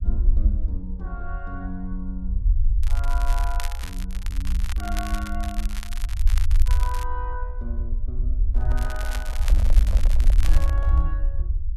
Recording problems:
low-frequency rumble; below 56 Hz, SNR -11 dB
crackle; from 3 to 7 s and from 9 to 11 s; loose cable, SNR 3 dB
handling noise; from 8.5 to 11 s; peak +1 dB vs average level

